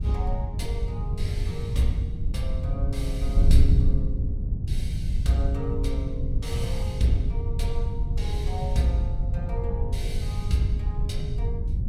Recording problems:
wind on the microphone; below 90 Hz, SNR -3 dB

